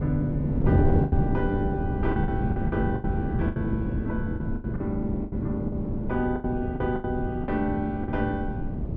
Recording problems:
wind noise; below 240 Hz, SNR -1 dB
lost packets; 11% of the sound replaced, filled with the last packet

